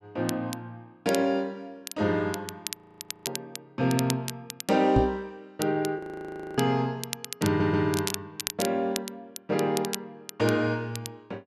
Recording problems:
crackle; vinyl, SNR 10 dB
frozen audio; at 2.5 s for 0.5 s and at 6 s for 0.5 s
knock on the microphone; at 5 s; peak +8 dB vs average level
stutter; at 7.5 s

